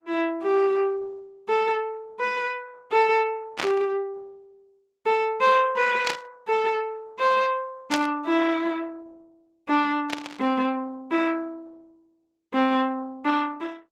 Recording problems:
codec artefacts; Opus, log-spectral distance 3 dB
static burst; 4 times, first at 3.5 s; peak +1 dB vs average level

